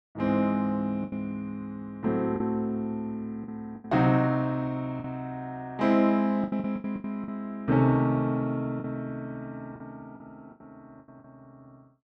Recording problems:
lost packets; 8% of the sound replaced, filled with the last packet

